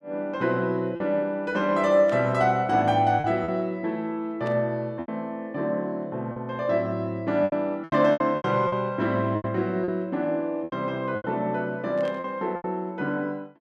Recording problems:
packet loss; 7% of the sound replaced, filled with repeated pitch periods
static burst; at 2 s, at 4.5 s and at 12 s; peak -14 dB vs average level

